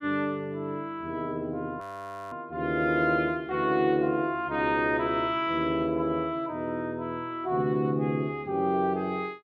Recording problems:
audio freezing; at 2 s for 0.5 s

